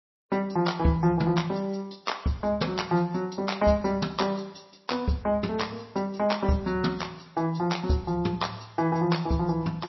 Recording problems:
lossy codec; MP3, log-spectral distance 4 dB, nothing above 5.7 kHz

